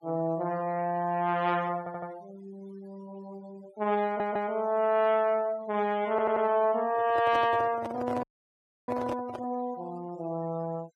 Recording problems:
noise reduction artefacts; signal-to-artefact ratio 23 dB
stutter; at 2 s, at 4 s and at 6 s
handling noise; from 7 to 9.5 s; peak -4 dB vs average level
audio cutting out; at 8 s for 0.5 s

